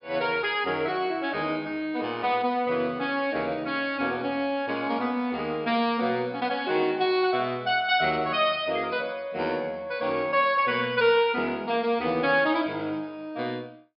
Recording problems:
treble missing; nothing above 5.5 kHz

